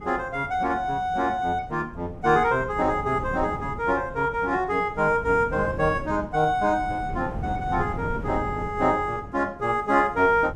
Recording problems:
wind on the microphone; below 250 Hz, SNR 13 dB

